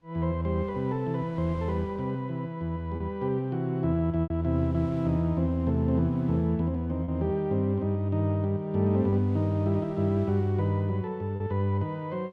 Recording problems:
wind noise; below 660 Hz, SNR 24 dB
lost packets; 2% of the sound replaced, filled with repeated pitch periods

